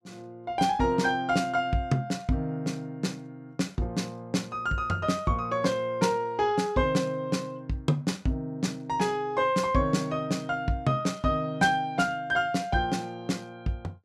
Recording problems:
none

